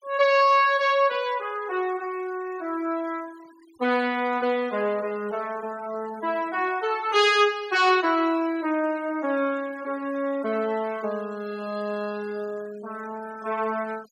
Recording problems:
denoising artefacts; signal-to-artefact ratio 23 dB

